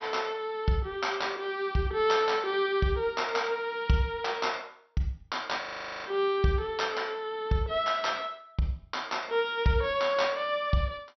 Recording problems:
treble missing; nothing above 5.9 kHz
audio freezing; at 5.5 s

